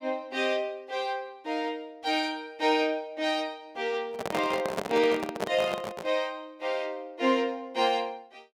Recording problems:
microphone handling noise; from 4 to 6 s; peak +3 dB vs average level

